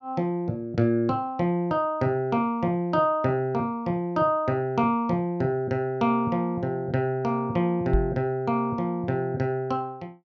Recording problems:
microphone bump; at 8 s; peak +4 dB vs average level

